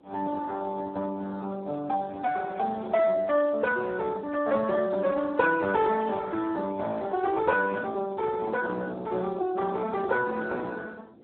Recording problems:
phone line; 240 Hz to 2.2 kHz, Speex
wind noise; below 520 Hz, SNR 22 dB

